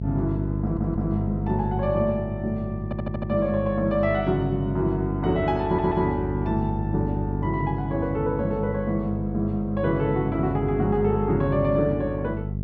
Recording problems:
hum; 50 Hz, harmonics up to 450 Hz, SNR 5 dB
audio stuttering; at 0.5 s, at 3 s and at 5.5 s

